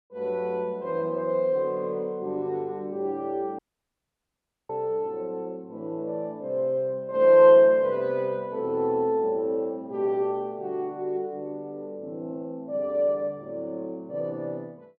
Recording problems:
dropout; at 3.5 s for 1 s

